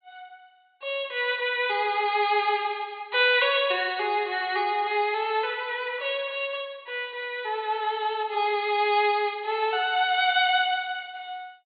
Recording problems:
treble missing; nothing above 4.6 kHz

